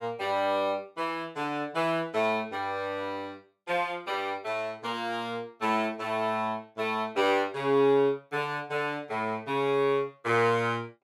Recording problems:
none

